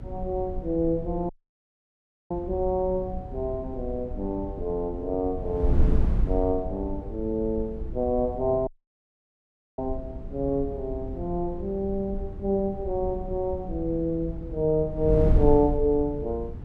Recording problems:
electrical hum; 60 Hz, harmonics up to 480 Hz, SNR 21 dB
wind on the microphone; below 84 Hz, SNR 6 dB
dropout; at 1.5 s for 1 s and at 8.5 s for 1 s

